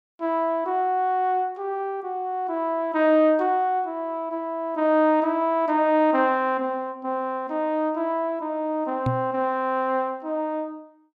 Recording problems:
knock on the microphone; at 9 s; peak +1 dB vs average level

